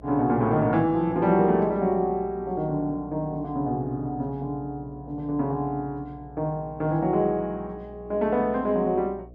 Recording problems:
electrical hum; 60 Hz, harmonics up to 660 Hz, SNR 21 dB

